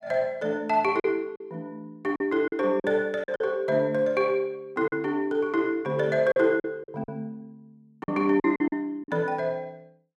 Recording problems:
packet loss; 7% of the sound replaced, filled with silence

